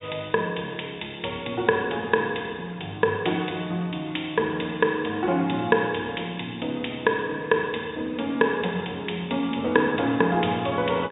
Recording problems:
low-pass filter; nothing above 4 kHz

